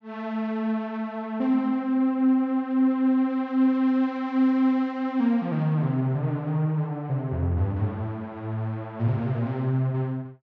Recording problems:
none

